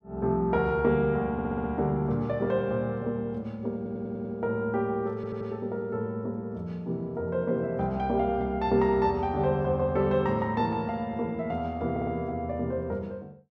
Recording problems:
stutter; 4 times, first at 1.5 s

